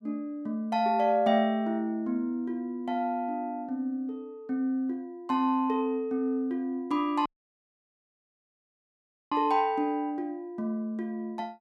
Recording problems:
audio cutting out; at 7.5 s for 2 s

